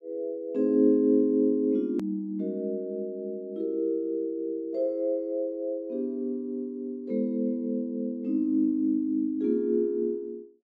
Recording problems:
click at an edit; at 2 s

